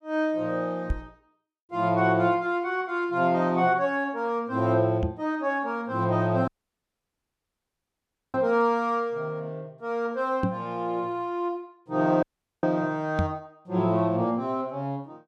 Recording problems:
microphone bump; 4 times, first at 1 s; peak +3 dB vs average level
dropout; at 6.5 s for 2 s and at 12 s

